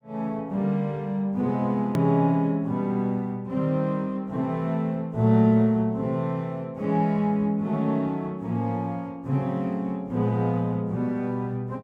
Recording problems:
hard cut with a click; at 2 s

